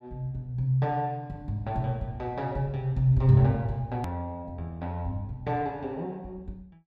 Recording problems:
hard cut with a click; at 4 s

